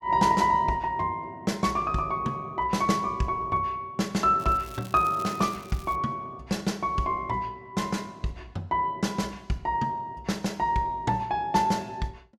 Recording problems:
crackling; from 4.5 to 6 s; loose cable, SNR 21 dB

